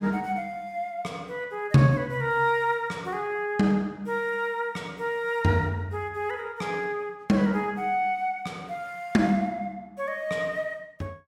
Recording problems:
none

